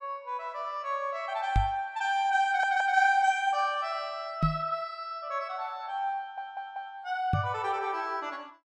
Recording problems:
microphone thump; at 1.5 s, at 4.5 s and at 7.5 s; peak +6 dB vs average level
audio stuttering; at 2.5 s and at 6 s

